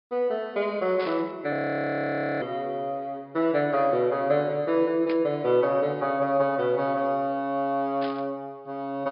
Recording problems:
treble cut off; nothing above 5.5 kHz
static burst; at 1 s, at 5 s and at 8 s; peak -7 dB vs average level
frozen audio; at 1.5 s for 1 s

